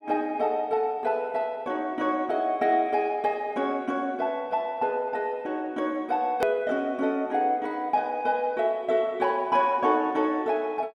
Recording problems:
hard cut with a click; at 6.5 s

